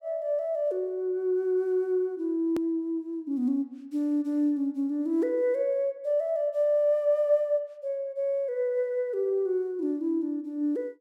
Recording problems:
click at an edit; at 2.5 s

